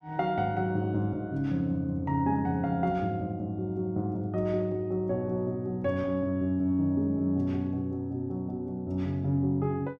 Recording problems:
none

